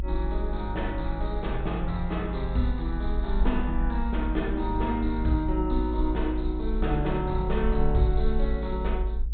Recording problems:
treble missing; nothing above 4 kHz
electrical hum; 60 Hz, harmonics up to 540 Hz, SNR 18 dB
rumble; below 54 Hz, SNR 2 dB

